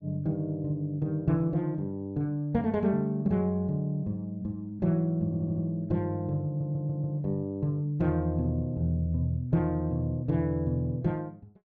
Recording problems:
audio stuttering; at 5.5 s and at 6.5 s

